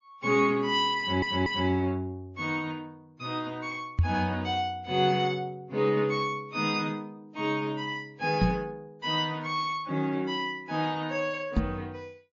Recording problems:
lossy compression; MP3, then AAC, log-spectral distance 2 dB, nothing above 6.9 kHz
audio stuttering; at 1 s
microphone bump; at 4 s, at 8.5 s and at 12 s; peak +8 dB vs average level

